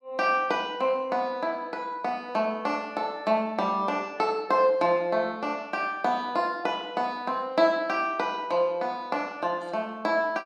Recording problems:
none

